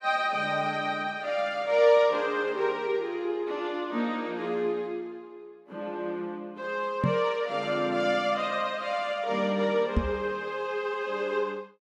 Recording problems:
microphone thump; at 7 s and at 10 s; peak +6 dB vs average level

